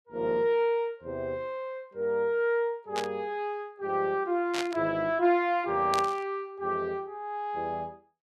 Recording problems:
static burst; at 3 s, at 4.5 s and at 6 s; peak 0 dB vs average level

